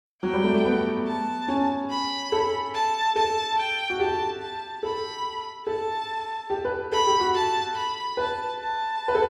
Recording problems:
none

